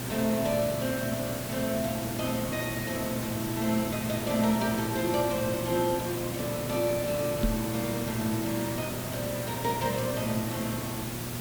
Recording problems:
electrical hum; 60 Hz, harmonics up to 720 Hz, SNR 8 dB
hiss; slope -4 dB per octave, SNR 5 dB
microphone thump; at 7.5 s; peak +5 dB vs average level

